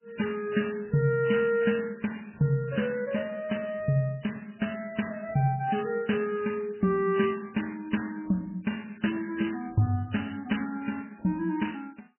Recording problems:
codec artefacts; MP3, log-spectral distance 6 dB, nothing above 3 kHz

